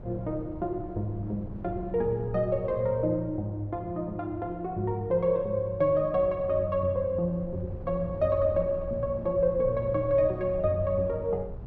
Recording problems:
wind on the microphone; below 160 Hz, SNR 14 dB

